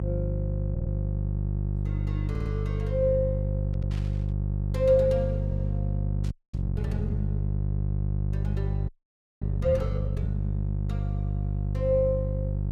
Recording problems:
hum; 50 Hz, harmonics up to 400 Hz, SNR -1 dB
stutter; 4 times, first at 0.5 s
static burst; at 3.5 s and at 6 s; peak -13 dB vs average level
audio freezing; at 6.5 s and at 9 s for 0.5 s

